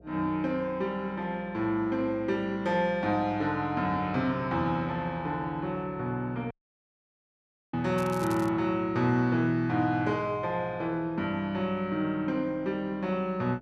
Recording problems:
hum; 60 Hz, harmonics up to 720 Hz, SNR 25 dB
dropout; at 6.5 s for 1 s
crackling; at 8 s; loose cable, SNR 19 dB

